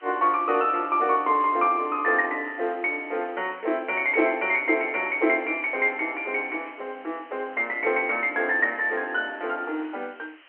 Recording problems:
phone line; 260 Hz to 3.2 kHz, G.711
hiss; SNR 28 dB

